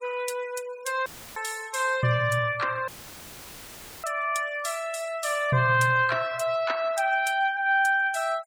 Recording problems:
noise reduction artefacts; signal-to-artefact ratio 20 dB
audio cutting out; at 1 s and at 3 s for 1 s; filled with static

